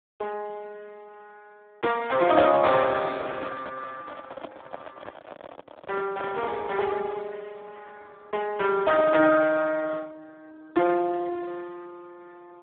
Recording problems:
phone line; 260 Hz to 3.5 kHz, Speex
handling noise; from 3 to 7 s; peak -8 dB vs average level

